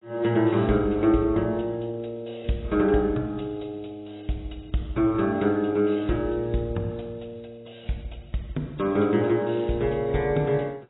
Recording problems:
lossy compression; AAC, log-spectral distance 3 dB, nothing above 3.9 kHz

